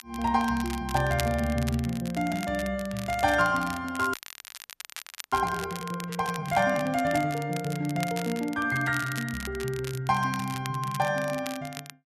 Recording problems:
crackling; vinyl, SNR 13 dB
frozen audio; at 4 s for 1 s

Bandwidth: 13.5 kHz